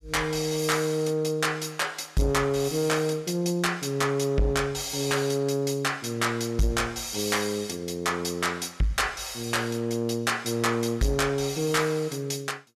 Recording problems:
distortion; soft clipping, signal-to-distortion ratio 11 dB

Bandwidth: 14.5 kHz